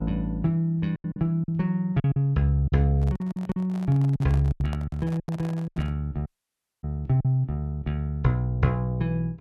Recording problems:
mains hum; 50 Hz, harmonics up to 900 Hz, SNR 30 dB
packet loss; 9% of the sound replaced, filled with silence
handling noise; from 3 to 6 s; peak -8 dB vs average level
dropout; at 6.5 s for 0.5 s

